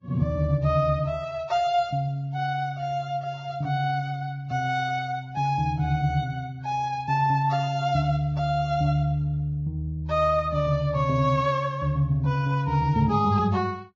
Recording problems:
lossy codec; Vorbis, log-spectral distance 2 dB, nothing above 6.9 kHz

